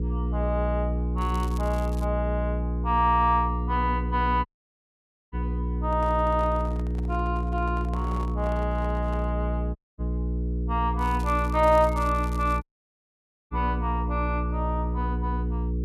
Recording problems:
electrical hum; 60 Hz, harmonics up to 480 Hz, SNR 1 dB
crackling; at 1 s and from 11 to 14 s; loose cable, SNR 21 dB
dropout; at 4.5 s for 1 s, at 10 s and at 13 s for 1 s
handling noise; from 6 to 9.5 s; peak -11 dB vs average level

